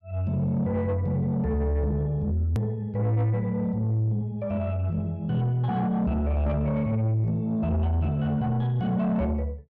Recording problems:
distorted audio; soft clipping, signal-to-distortion ratio 11 dB
edit click; at 2.5 s

